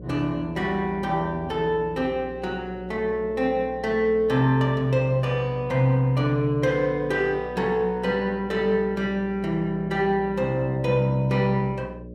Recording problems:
hum; 60 Hz, harmonics up to 600 Hz, SNR 17 dB

